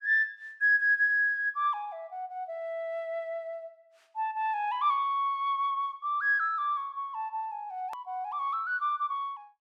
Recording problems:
hard cut with a click; at 8 s

